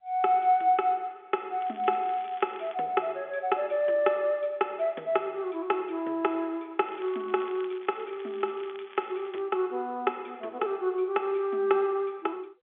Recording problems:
phone line; 260 Hz to 3.7 kHz, G.711
crackling; from 1.5 to 3 s and from 7 to 9.5 s; loose cable, SNR 22 dB

